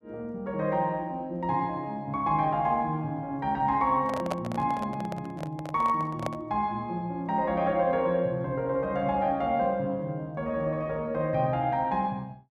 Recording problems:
handling noise; from 4 to 6.5 s; peak +1 dB vs average level

